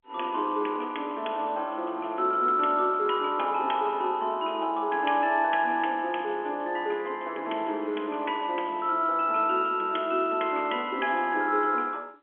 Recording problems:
telephone audio; 260 Hz to 3.4 kHz, G.711

